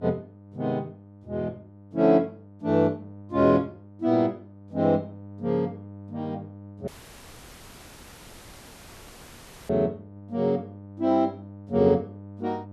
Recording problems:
hum; 50 Hz, harmonics up to 900 Hz, SNR 19 dB
audio cutting out; at 7 s for 3 s

